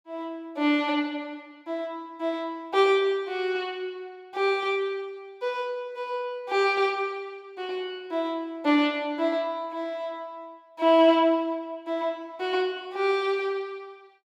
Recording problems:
none

